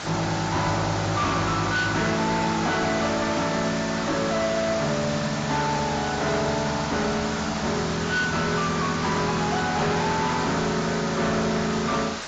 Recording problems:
lossy codec; AAC, log-spectral distance 11 dB, nothing above 7.3 kHz
distorted audio; hard clipping, signal-to-distortion ratio 10 dB
background hiss; SNR 6 dB

